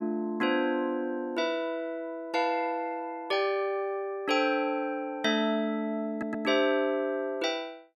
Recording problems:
audio stuttering; at 6 s

